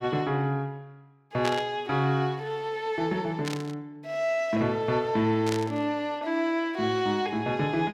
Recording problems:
burst of static; at 1.5 s, at 3.5 s and at 5.5 s; peak -1 dB vs average level

